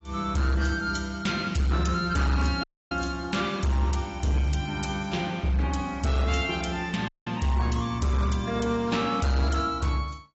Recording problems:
lossy codec; AAC, log-spectral distance 3 dB, nothing above 7.6 kHz
distorted audio; hard clipping, signal-to-distortion ratio 11 dB
audio cutting out; at 2.5 s and at 7 s

